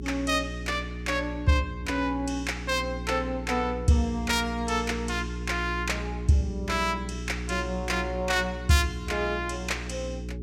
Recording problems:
electrical hum; 60 Hz, harmonics up to 420 Hz, SNR 8 dB

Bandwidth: 16.5 kHz